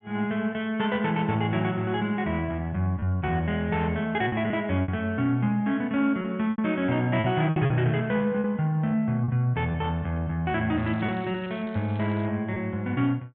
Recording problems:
low-pass filter; nothing above 4 kHz
lost packets; 5% of the sound replaced, filled with repeated pitch periods
crackle; from 11 to 12 s; loose cable, SNR 28 dB

